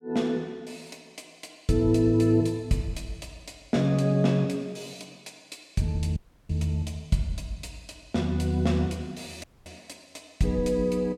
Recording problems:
audio cutting out; at 6 s and at 9.5 s

